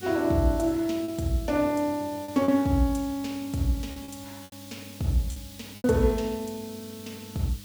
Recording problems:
electrical hum; 50 Hz, harmonics up to 600 Hz, SNR 21 dB
background hiss; slope +4 dB per octave, SNR 18 dB
packet loss; 5% of the sound replaced, filled with repeated pitch periods

